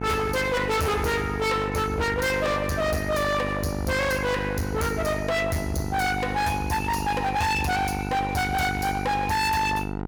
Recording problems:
distorted audio; hard clipping, uneven, signal-to-distortion ratio 6 dB
hum; 50 Hz, harmonics up to 1.4 kHz, SNR 6 dB

